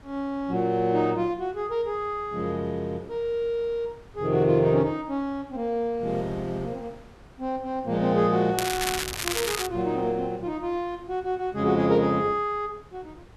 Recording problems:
wind noise; below 670 Hz, SNR 21 dB
crackling; from 8.5 to 9.5 s; loose cable, SNR 3 dB

